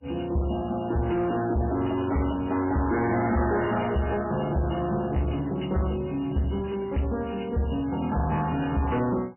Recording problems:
codec artefacts; MP3, log-spectral distance 4 dB, nothing above 2.9 kHz
distorted audio; soft clipping, signal-to-distortion ratio 7 dB

